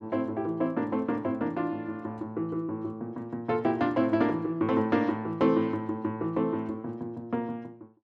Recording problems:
none

